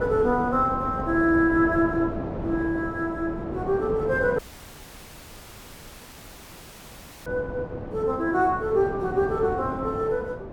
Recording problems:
wind on the microphone; below 550 Hz, SNR 9 dB
audio cutting out; at 4.5 s for 3 s

